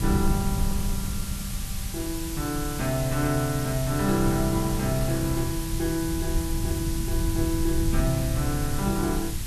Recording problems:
background hiss; slope +1 dB per octave, SNR 7 dB
rumble; below 100 Hz, SNR 4 dB
wind on the microphone; below 360 Hz, SNR 18 dB

